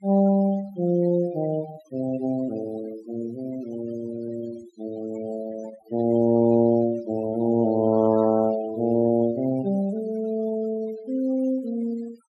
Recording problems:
denoising artefacts; signal-to-artefact ratio 19 dB

